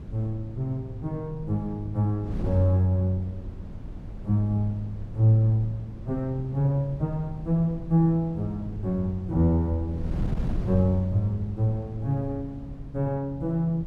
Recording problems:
wind noise; below 170 Hz, SNR 11 dB

